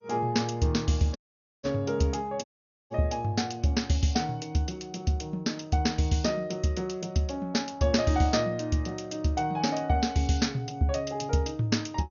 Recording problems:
lossy codec; MP2, log-spectral distance 3 dB, nothing above 6.7 kHz
audio cutting out; at 1 s and at 2.5 s

